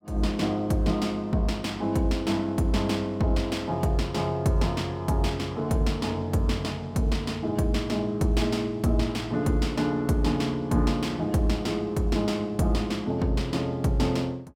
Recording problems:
none

